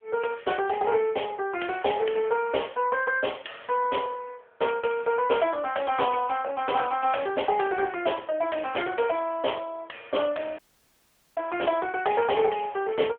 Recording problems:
telephone audio; 340 Hz to 3.4 kHz, AMR-NB
audio cutting out; at 11 s for 1 s

